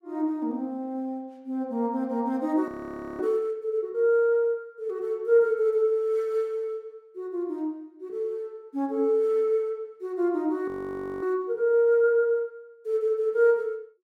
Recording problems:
frozen audio; at 2.5 s for 0.5 s and at 11 s for 0.5 s

